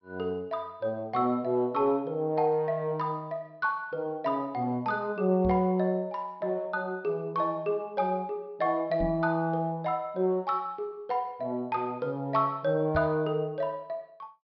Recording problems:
treble cut off; nothing above 5.5 kHz
knock on the microphone; at 5.5 s, at 9 s and at 13 s; peak -1 dB vs average level

